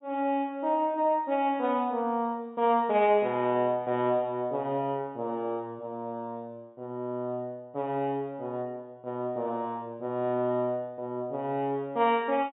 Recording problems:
treble missing; nothing above 4 kHz

